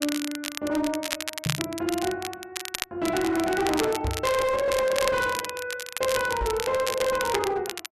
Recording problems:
distortion; hard clipping, signal-to-distortion ratio 10 dB
crackling; vinyl, SNR 7 dB
microphone bump; at 1.5 s, at 4 s and at 6.5 s; peak +1 dB vs average level

